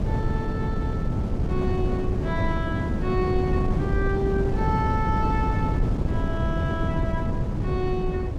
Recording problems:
wind noise; below 220 Hz, SNR -4 dB

